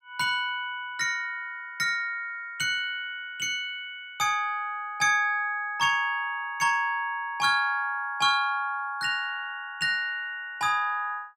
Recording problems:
none

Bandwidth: 16 kHz